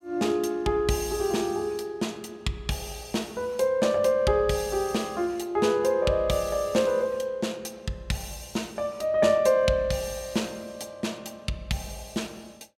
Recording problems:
none

